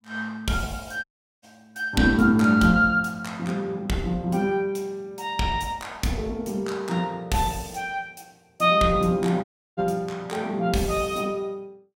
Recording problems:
dropout; at 1 s and at 9.5 s

